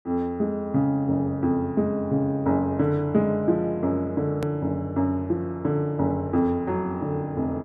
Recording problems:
edit click; at 4.5 s

